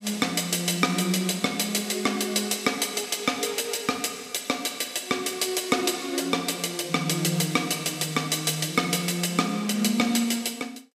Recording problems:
none

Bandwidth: 15 kHz